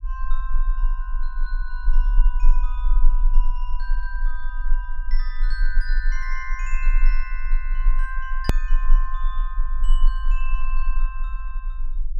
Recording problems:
low-frequency rumble; below 30 Hz, strongest tone 22 Hz, SNR -11 dB
edit click; at 8.5 s

